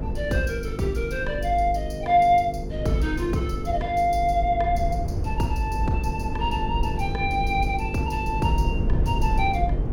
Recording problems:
electrical hum; 50 Hz, harmonics up to 500 Hz, SNR 10 dB
rumble; below 100 Hz, SNR 4 dB

